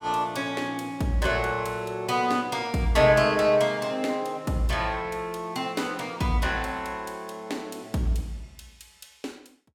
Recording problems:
none

